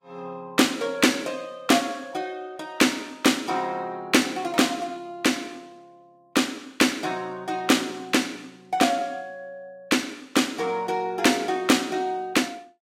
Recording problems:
lossy codec; Vorbis, log-spectral distance 3 dB, nothing above 16 kHz

